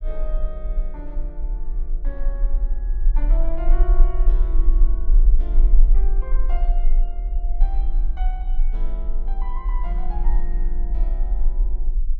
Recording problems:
low-frequency rumble; below 36 Hz, strongest tone 22 Hz, SNR -15 dB

